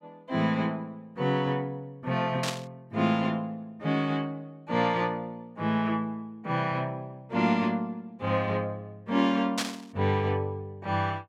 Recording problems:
static burst; at 2.5 s and at 9.5 s; peak +4 dB vs average level

